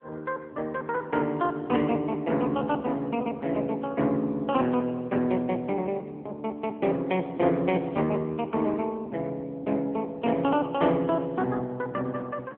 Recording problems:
telephone audio; 150 Hz to 3.2 kHz, AMR-NB

